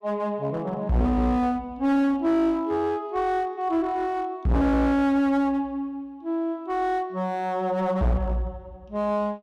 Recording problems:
distorted audio; hard clipping, uneven, signal-to-distortion ratio 7 dB

